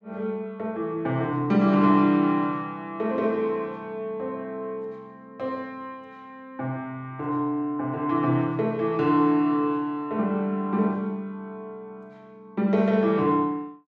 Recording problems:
none

